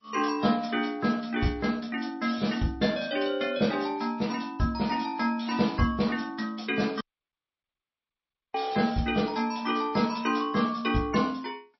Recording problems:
lossy compression; G.722, then MP3, log-spectral distance 3 dB, nothing above 5.7 kHz
dropout; at 7 s for 1.5 s

